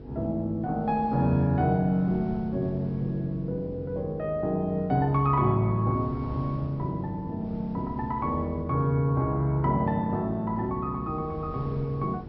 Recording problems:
treble cut off; nothing above 5.6 kHz
mains hum; 50 Hz, harmonics up to 500 Hz, SNR 17 dB
wind noise; below 240 Hz, SNR 19 dB

